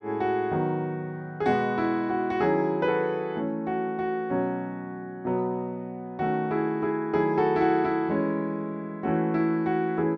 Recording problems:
none

